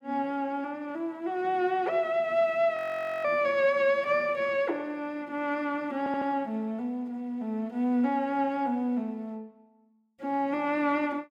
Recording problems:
frozen audio; at 3 s
audio stuttering; at 6 s

